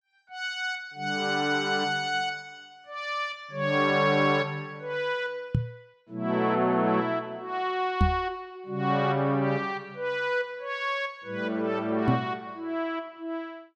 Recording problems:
microphone thump; at 5.5 s, at 8 s and at 12 s; peak +7 dB vs average level

